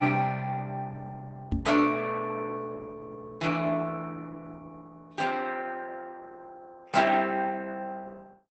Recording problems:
lossy codec; Opus, log-spectral distance 4 dB, nothing above 8.2 kHz
knock on the microphone; at 1.5 s; peak +4 dB vs average level

